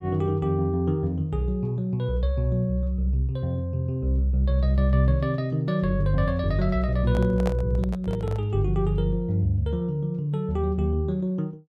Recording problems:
microphone handling noise; from 7 to 8.5 s; peak -2 dB vs average level

